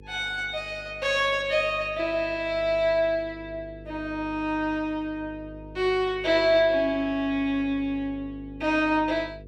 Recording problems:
hum; 50 Hz, harmonics up to 500 Hz, SNR 20 dB

